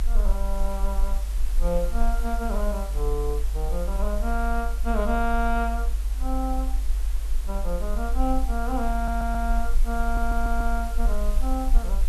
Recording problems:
hiss; slope -2 dB per octave, SNR 14 dB
rumble; below 50 Hz, SNR -2 dB
stutter; at 9 s and at 10 s

